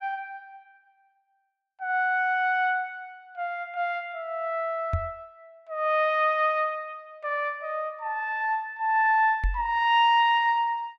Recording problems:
knock on the microphone; at 5 s and at 9.5 s; peak +1 dB vs average level

